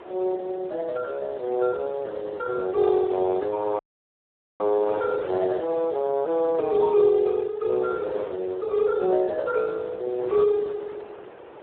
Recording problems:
telephone audio; 320 Hz to 2.3 kHz, Speex
wind on the microphone; below 940 Hz, SNR 16 dB
dropout; at 4 s for 1 s

